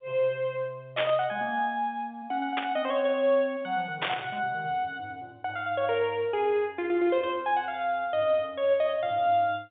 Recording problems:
telephone audio; 260 Hz to 3.6 kHz, G.711
static burst; at 1 s, at 2.5 s and at 4 s; peak +3 dB vs average level

